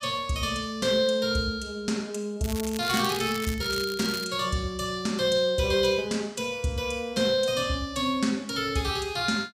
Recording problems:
crackle; from 2.5 to 4.5 s; loose cable, SNR 11 dB

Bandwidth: 15.5 kHz